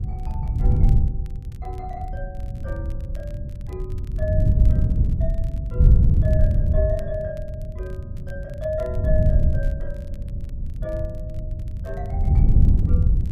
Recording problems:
wind noise; below 110 Hz, SNR -11 dB
crackle; vinyl, SNR 24 dB

